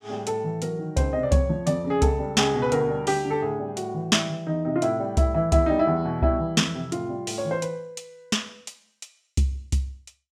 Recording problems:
none

